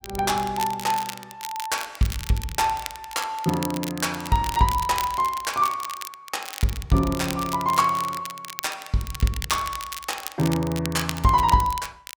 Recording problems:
crackling; vinyl, SNR 11 dB

